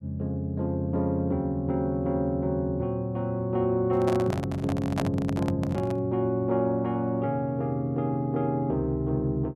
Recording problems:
handling noise; from 4 to 6 s; peak +1 dB vs average level

